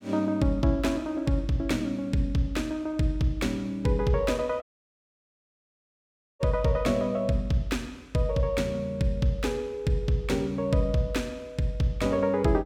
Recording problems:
dropout; at 4.5 s for 2 s

